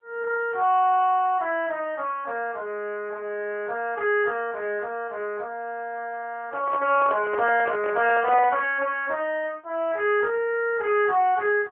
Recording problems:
phone line; 340 Hz to 3.3 kHz, AMR-NB
microphone handling noise; from 6.5 to 8.5 s; peak -4 dB vs average level

